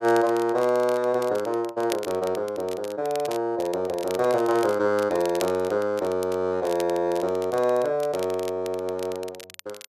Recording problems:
crackle; vinyl, SNR 18 dB

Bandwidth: 13.5 kHz